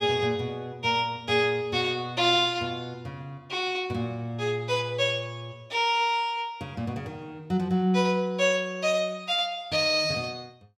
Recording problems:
none

